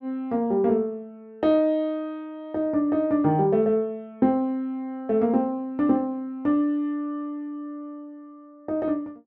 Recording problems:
none

